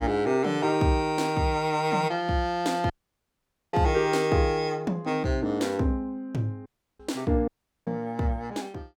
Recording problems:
dropout; at 3 s for 1 s, at 6.5 s and at 7.5 s

